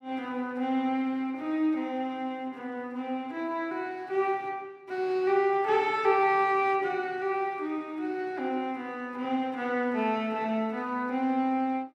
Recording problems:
none

